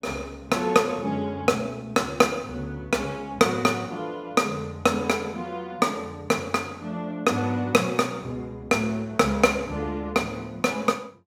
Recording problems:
none

